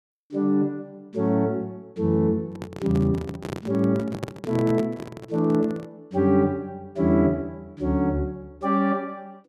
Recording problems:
handling noise; from 2.5 to 6 s; peak -2 dB vs average level

